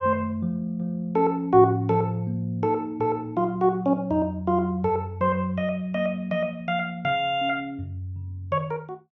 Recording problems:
none

